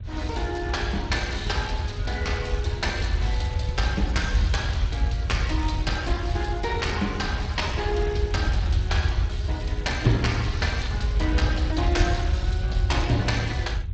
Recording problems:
codec artefacts; Speex, log-spectral distance 2 dB, nothing above 7.6 kHz
rumble; below 90 Hz, SNR -1 dB

